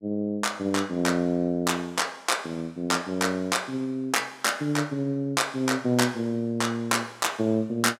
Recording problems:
none

